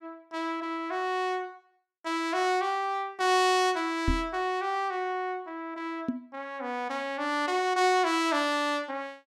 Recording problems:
knock on the microphone; at 4 s and at 6 s; peak +3 dB vs average level

